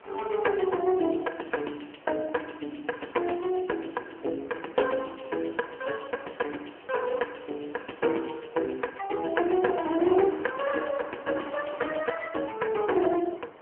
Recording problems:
telephone audio; 280 Hz to 3.1 kHz, AMR-NB
wind noise; below 1.4 kHz, SNR 18 dB

